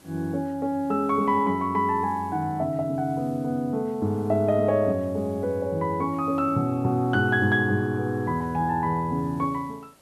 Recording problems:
background hiss; slope -4 dB per octave, SNR 30 dB

